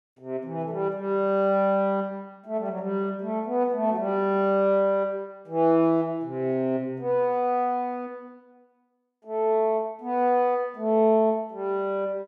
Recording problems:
none

